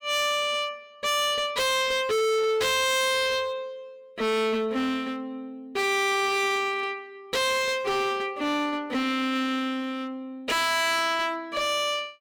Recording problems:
distortion; hard clipping, uneven, signal-to-distortion ratio 5 dB

